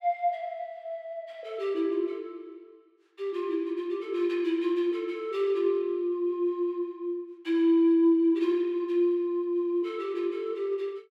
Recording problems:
none

